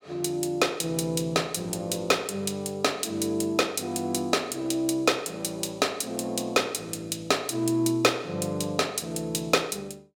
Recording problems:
none

